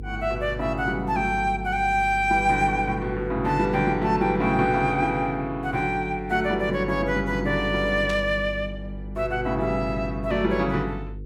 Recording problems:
electrical hum; 50 Hz, harmonics up to 500 Hz, SNR 12 dB
burst of static; at 8 s; peak -8 dB vs average level

